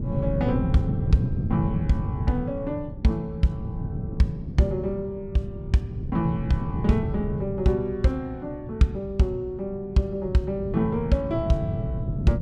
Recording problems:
wind on the microphone; below 180 Hz, SNR 4 dB

